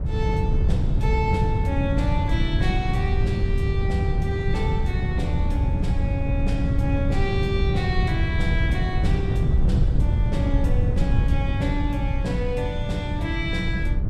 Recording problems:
wind on the microphone; below 120 Hz, SNR -5 dB

